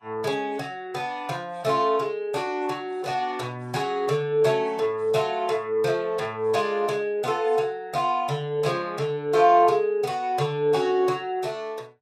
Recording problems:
codec artefacts; Vorbis, log-spectral distance 2 dB, nothing above 13.5 kHz

